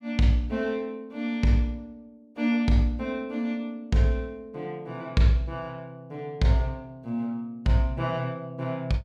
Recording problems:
none

